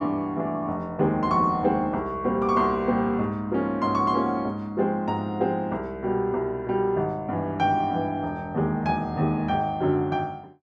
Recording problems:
none

